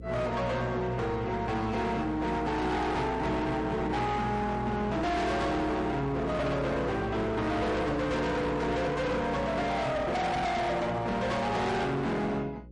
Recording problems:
codec artefacts; MP3, log-spectral distance 2 dB, nothing above 10.1 kHz
distorted audio; hard clipping, uneven, signal-to-distortion ratio 5 dB
mains hum; 60 Hz, harmonics up to 540 Hz, SNR 14 dB

